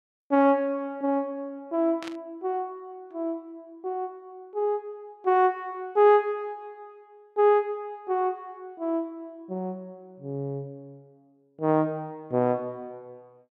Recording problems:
burst of static; at 2 s; peak -9 dB vs average level

